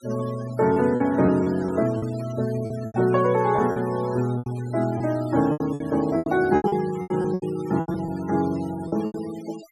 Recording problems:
denoising artefacts; signal-to-artefact ratio 19 dB
lost packets; 12% of the sound replaced, filled with repeated pitch periods

